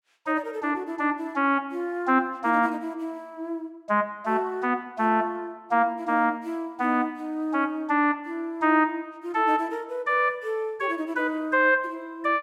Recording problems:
none

